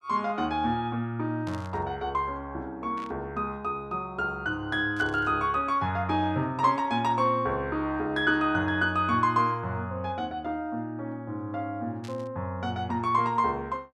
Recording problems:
static burst; 4 times, first at 1.5 s; peak -13 dB vs average level

